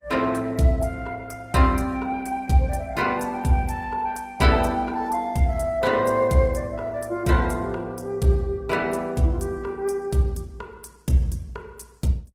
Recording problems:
lossy codec; Opus, log-spectral distance 3 dB

